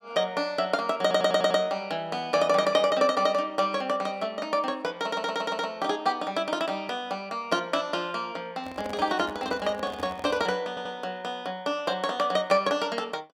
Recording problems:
stutter; at 1 s, at 5 s and at 11 s
handling noise; from 8.5 to 11 s; peak -6 dB vs average level

